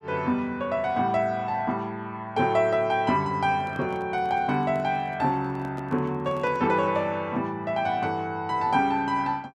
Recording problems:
handling noise; from 3.5 to 7 s; peak -10 dB vs average level

